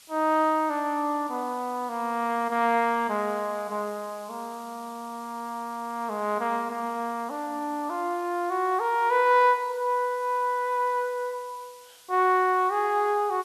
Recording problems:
hiss; slope +2 dB per octave, SNR 24 dB

